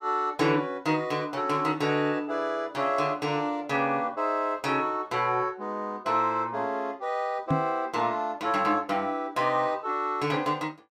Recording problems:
microphone bump; at 7.5 s; peak +5 dB vs average level

